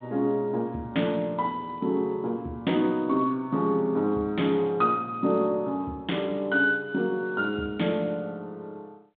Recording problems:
phone line; 150 Hz to 3.6 kHz, G.726

